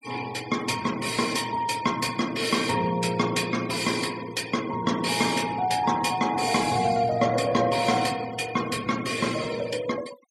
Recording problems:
denoising artefacts; signal-to-artefact ratio 16 dB

